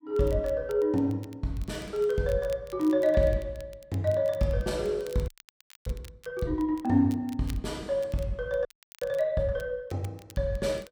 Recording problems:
crackling; vinyl, SNR 25 dB
audio freezing; at 5.5 s for 0.5 s and at 8.5 s

